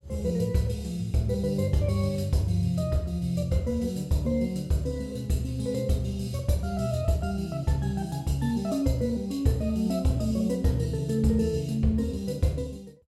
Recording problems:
none

